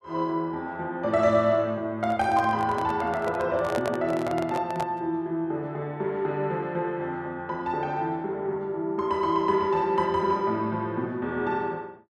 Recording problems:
microphone handling noise; from 2 to 5 s; peak 0 dB vs average level

